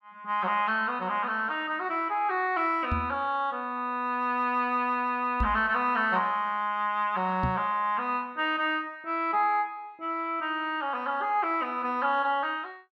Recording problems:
microphone thump; at 3 s, at 5.5 s and at 7.5 s; peak +2 dB vs average level

